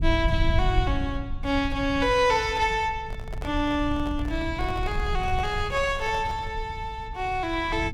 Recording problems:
low-frequency rumble; below 92 Hz, SNR 6 dB
microphone handling noise; from 3 to 6.5 s; peak -10 dB vs average level

